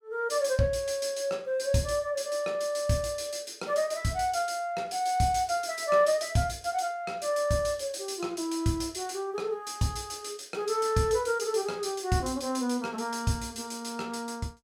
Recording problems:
none

